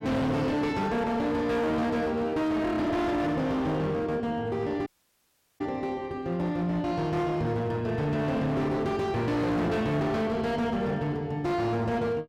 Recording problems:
distortion; hard clipping, signal-to-distortion ratio 8 dB
dropout; at 5 s for 0.5 s

